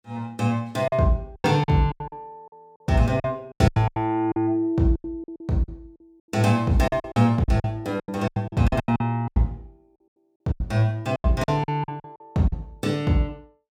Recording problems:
lost packets; 16% of the sound replaced, filled with silence

